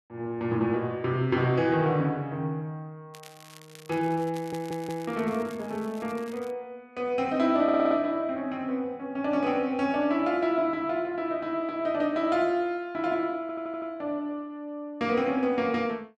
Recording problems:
crackling; from 3 to 6.5 s; loose cable, SNR 22 dB
audio stuttering; at 4.5 s, at 7.5 s and at 13 s

